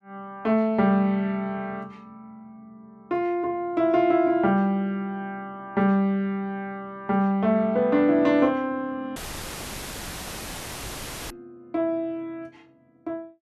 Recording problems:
dropout; at 9 s for 2 s; filled with static

